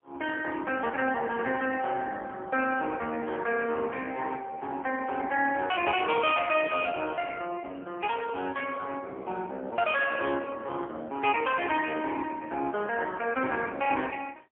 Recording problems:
telephone audio; 260 Hz to 3.2 kHz, AMR-NB, then MP3

